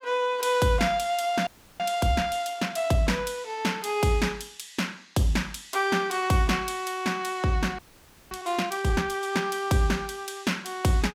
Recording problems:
frozen audio; at 1.5 s and at 8 s for 0.5 s

